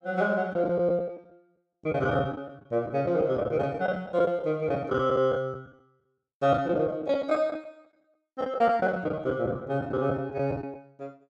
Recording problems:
packet loss; 13% of the sound replaced, filled with the last packet

